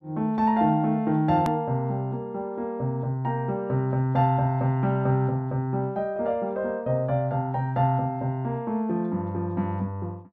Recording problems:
click at an edit; at 1.5 s

